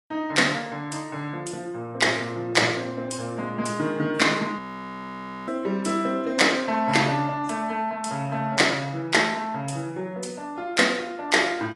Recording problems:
lossy compression; AAC, log-spectral distance 3 dB, nothing above 10.7 kHz
audio freezing; at 4.5 s for 1 s

